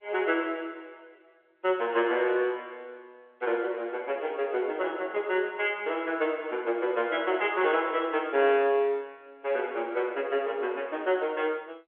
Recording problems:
telephone audio; 280 Hz to 3.4 kHz, G.711

